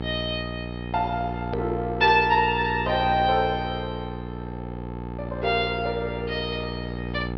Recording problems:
low-pass filter; nothing above 5.5 kHz
hum; 60 Hz, harmonics up to 1.4 kHz, SNR 8 dB
click at an edit; at 1.5 s

